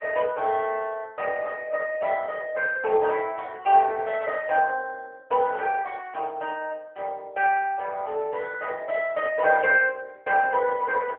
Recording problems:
phone line; 320 Hz to 3.3 kHz, AMR-NB

